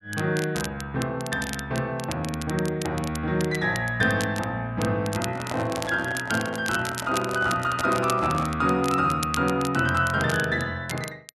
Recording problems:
crackling; vinyl, SNR 12 dB
microphone handling noise; from 5 to 8.5 s; peak -3 dB vs average level

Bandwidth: 12 kHz